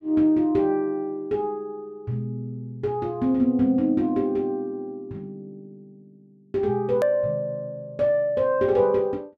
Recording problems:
click at an edit; at 7 s

